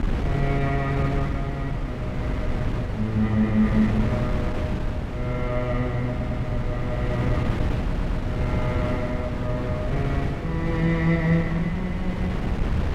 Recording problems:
wind noise; below 230 Hz, SNR 1 dB
audio stuttering; at 6 s and at 8 s

